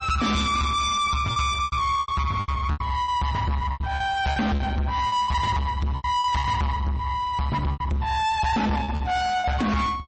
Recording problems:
lossy codec; MP3, log-spectral distance 2 dB, nothing above 8.2 kHz
distortion; soft clipping, signal-to-distortion ratio 7 dB
lost packets; 10% of the sound replaced, filled with repeated pitch periods

